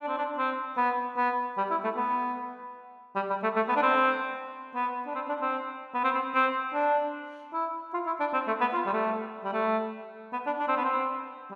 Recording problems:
none

